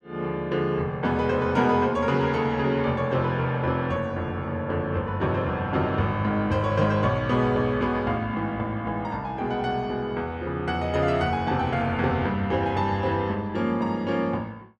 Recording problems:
none

